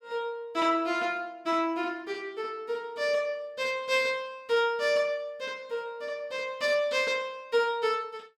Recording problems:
none

